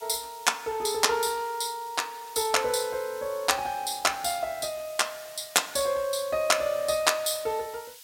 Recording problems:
background hiss; slope +6 dB per octave, SNR 19 dB

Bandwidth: 16.5 kHz